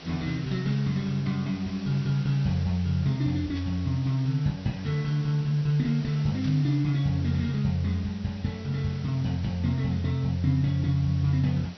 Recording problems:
treble cut off; nothing above 5.9 kHz
background hiss; SNR 18 dB
static burst; at 3.5 s and at 6.5 s; peak -14 dB vs average level

